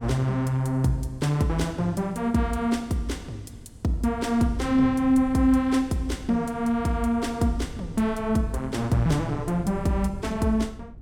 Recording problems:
wind on the microphone; below 150 Hz, SNR 17 dB

